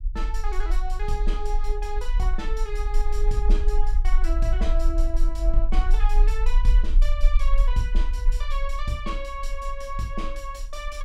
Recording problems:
rumble; below 38 Hz, strongest tone 28 Hz, SNR -7 dB

